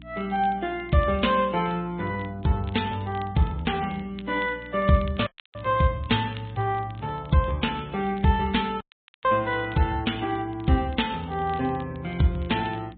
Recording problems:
treble cut off; nothing above 3.8 kHz
lossy compression; MP3, log-spectral distance 3 dB
hum; 60 Hz, harmonics up to 300 Hz, SNR 20 dB
crackling; vinyl, SNR 27 dB
audio cutting out; at 5.5 s and at 9 s

